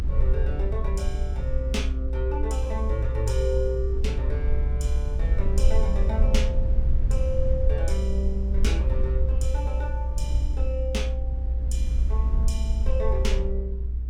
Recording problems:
electrical hum; 60 Hz, harmonics up to 420 Hz, SNR 16 dB
rumble; below 62 Hz, SNR -7 dB

